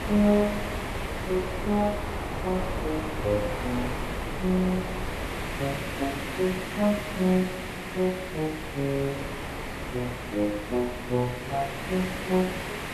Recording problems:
background hiss; SNR 6 dB
wind noise; below 820 Hz, SNR 9 dB

